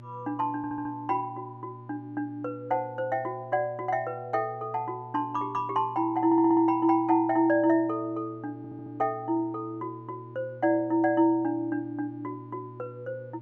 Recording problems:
hum; 60 Hz, harmonics up to 840 Hz, SNR 19 dB
stutter; at 0.5 s, at 6.5 s and at 8.5 s

